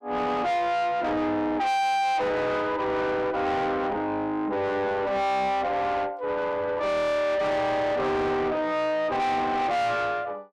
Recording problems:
distortion; soft clipping, signal-to-distortion ratio 6 dB

